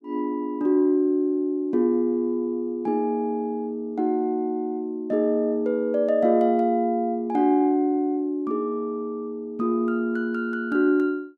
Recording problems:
none

